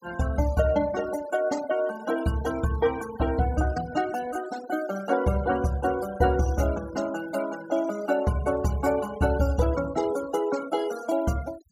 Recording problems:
denoising artefacts; signal-to-artefact ratio 16 dB

